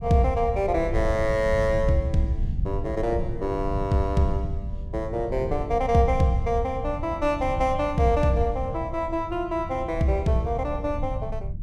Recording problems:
rumble; below 100 Hz, SNR 7 dB

